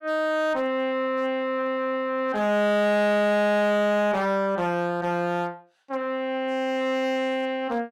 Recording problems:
distorted audio; hard clipping, signal-to-distortion ratio 10 dB

